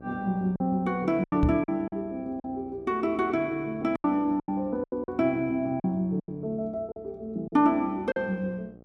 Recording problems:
electrical hum; 60 Hz, harmonics up to 840 Hz, SNR 23 dB
lost packets; 9% of the sound replaced, filled with silence
microphone thump; at 1.5 s; peak +6 dB vs average level

